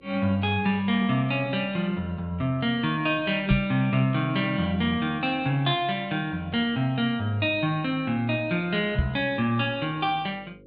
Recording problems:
treble missing; nothing above 4.6 kHz
hum; 50 Hz, harmonics up to 550 Hz, SNR 26 dB
knock on the microphone; at 3.5 s and at 9 s; peak +5 dB vs average level

